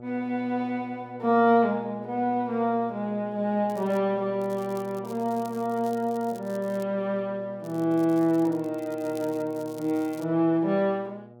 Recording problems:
hum; 60 Hz, harmonics up to 1.3 kHz, SNR 19 dB
crackle; at 3.5 s, from 4.5 to 7 s and from 7.5 to 10 s; loose cable, SNR 25 dB

